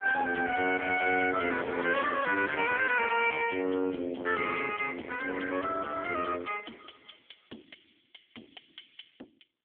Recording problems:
phone line; 220 Hz to 3.4 kHz, AMR-NB
distortion; hard clipping, signal-to-distortion ratio 9 dB

